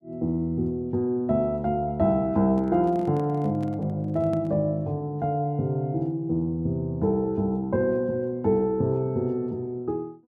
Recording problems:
handling noise; from 2.5 to 4.5 s; peak -9 dB vs average level

